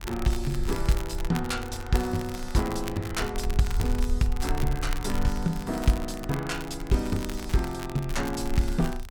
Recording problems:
rumble; below 52 Hz, SNR 7 dB
crackling; vinyl, SNR 13 dB

